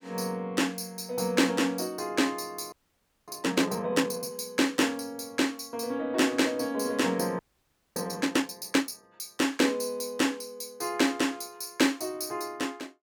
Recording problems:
frozen audio; at 2.5 s for 0.5 s and at 7.5 s for 0.5 s

